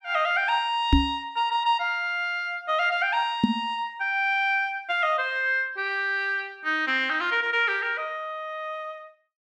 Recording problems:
knock on the microphone; at 1 s and at 3.5 s; peak +8 dB vs average level

